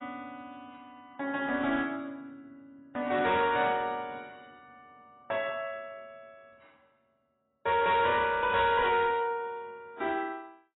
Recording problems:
lossy compression; AAC, log-spectral distance 2 dB, nothing above 3.8 kHz
distorted audio; hard clipping, uneven, signal-to-distortion ratio 10 dB

